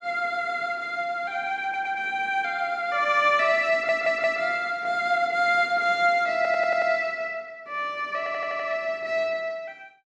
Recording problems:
audio stuttering; 4 times, first at 1.5 s

